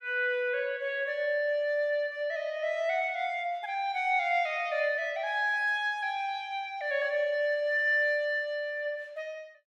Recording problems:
none

